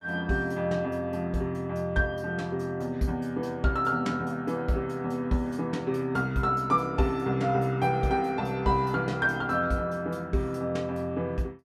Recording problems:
none

